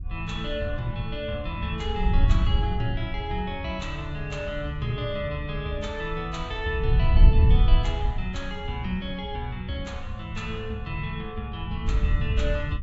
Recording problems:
treble cut off; nothing above 8 kHz
wind noise; below 78 Hz, SNR -3 dB

